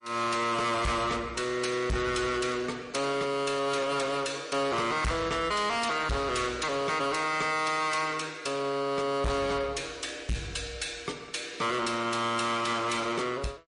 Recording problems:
lossy codec; MP3, log-spectral distance 4 dB, nothing above 10.4 kHz
distorted audio; soft clipping, signal-to-distortion ratio 7 dB

